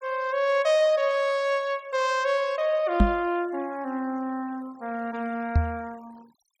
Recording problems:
denoising artefacts; signal-to-artefact ratio 25 dB
microphone bump; at 3 s and at 5.5 s; peak +9 dB vs average level

